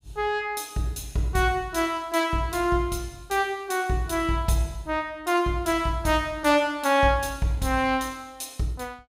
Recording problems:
none

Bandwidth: 15.5 kHz